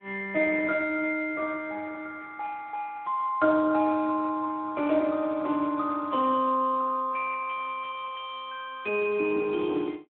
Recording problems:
phone line; 220 Hz to 3 kHz, Speex

